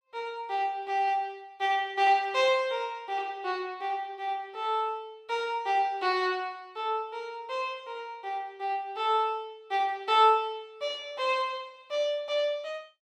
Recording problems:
none

